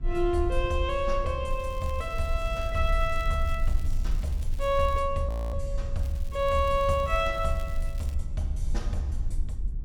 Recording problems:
low-frequency rumble; below 52 Hz, strongest tone 24 Hz, SNR 4 dB
crackling; from 1.5 to 5 s and from 6 to 8 s; loose cable, SNR 23 dB
frozen audio; at 5.5 s

